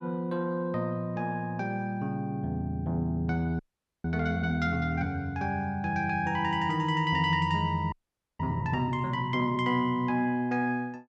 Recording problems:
frozen audio; at 3.5 s and at 8 s

